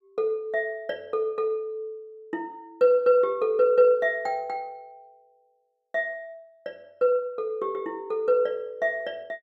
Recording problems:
none

